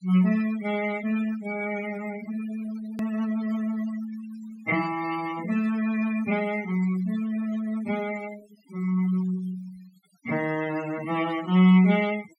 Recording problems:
noise reduction artefacts; signal-to-artefact ratio 15 dB
edit click; at 3 s

